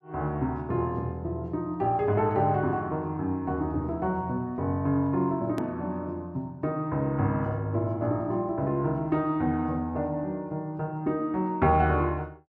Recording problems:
edit click; at 5.5 s

